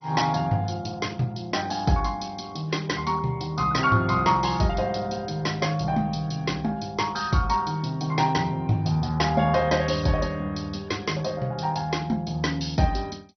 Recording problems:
codec artefacts; MP2, log-spectral distance 5 dB, nothing above 6 kHz

